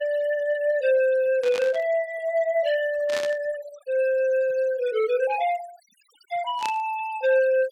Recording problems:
noise reduction artefacts; signal-to-artefact ratio 18 dB
static burst; at 1.5 s, at 3 s and at 6.5 s; peak -5 dB vs average level

